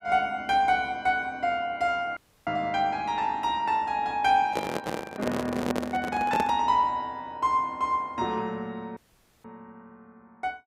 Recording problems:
audio cutting out; at 2 s and at 9 s
microphone handling noise; from 4.5 to 6.5 s; peak +1 dB vs average level

